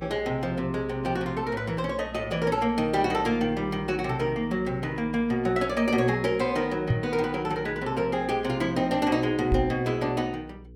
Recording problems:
hum; 60 Hz, harmonics up to 480 Hz, SNR 19 dB
microphone bump; at 7 s and at 9.5 s; peak +6 dB vs average level

